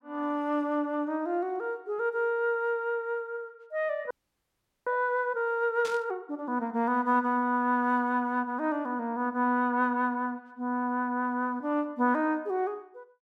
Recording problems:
frozen audio; at 4 s for 1 s
static burst; at 6 s; peak -7 dB vs average level

